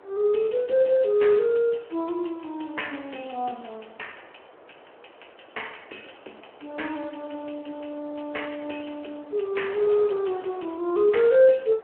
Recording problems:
telephone audio; 320 Hz to 3.1 kHz, Speex
wind noise; below 1.1 kHz, SNR 23 dB

